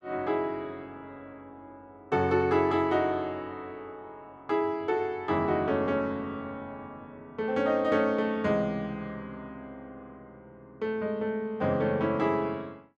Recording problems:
none

